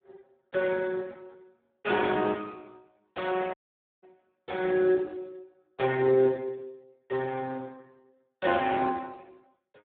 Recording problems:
phone line; 170 Hz to 2.1 kHz, Speex
audio cutting out; at 3.5 s

